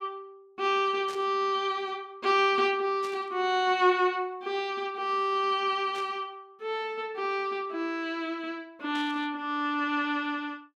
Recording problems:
burst of static; 4 times, first at 1 s; peak -11 dB vs average level

